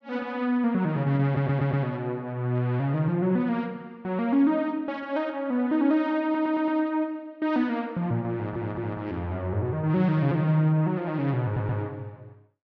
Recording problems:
audio stuttering; 4 times, first at 1.5 s

